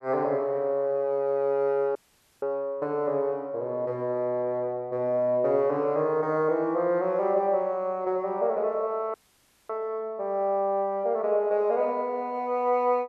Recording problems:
audio cutting out; at 2 s and at 9 s for 0.5 s

